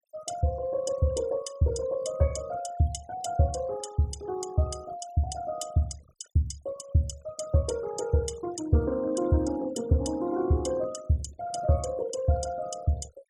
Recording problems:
noise reduction artefacts; signal-to-artefact ratio 19 dB

